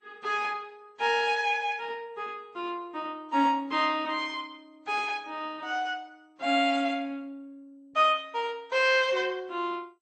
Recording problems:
lossy codec; MP2, then AAC, log-spectral distance 3 dB, nothing above 8.5 kHz

